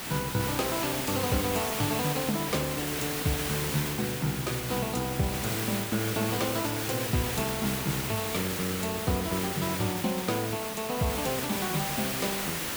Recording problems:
background hiss; slope -2 dB per octave, SNR 1 dB

